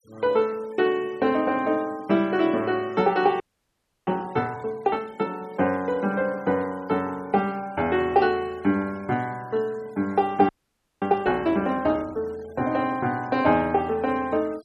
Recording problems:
noise reduction artefacts; signal-to-artefact ratio 26 dB
audio freezing; at 3.5 s for 0.5 s and at 10 s for 0.5 s

